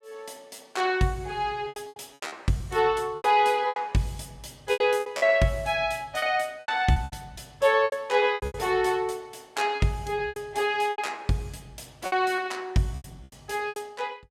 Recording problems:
lost packets; 12% of the sound replaced, filled with repeated pitch periods

